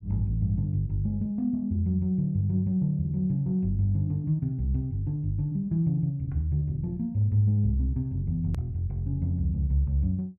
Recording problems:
click at an edit; at 8.5 s

